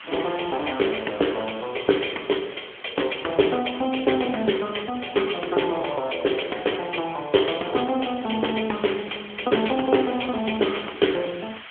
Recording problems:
telephone audio; 300 Hz to 3.4 kHz, AMR-NB
background hiss; SNR 17 dB

